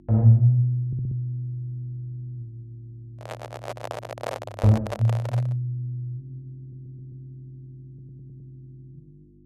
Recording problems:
hum; 50 Hz, harmonics up to 350 Hz, SNR 30 dB
stutter; 4 times, first at 1 s
handling noise; from 3 to 5.5 s; peak -3 dB vs average level

